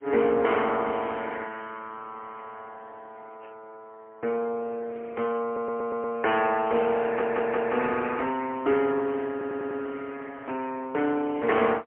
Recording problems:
phone line; 320 Hz to 3.1 kHz, AMR-NB, then MP3
audio stuttering; at 5.5 s, at 7 s and at 9.5 s

